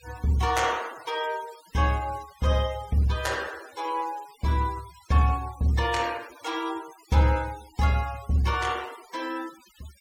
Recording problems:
denoising artefacts; signal-to-artefact ratio 19 dB

